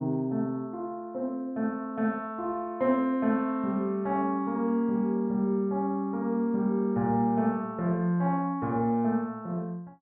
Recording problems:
none

